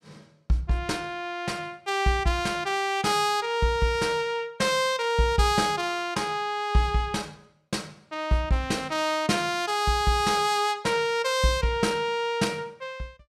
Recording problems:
none

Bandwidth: 15 kHz